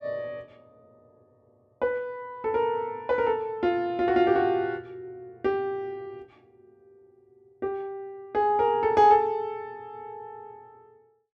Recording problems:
none

